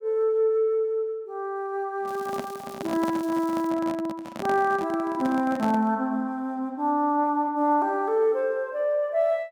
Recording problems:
microphone handling noise; from 2 to 6 s; peak -4 dB vs average level
crackle; from 2 to 3.5 s; loose cable, SNR 24 dB

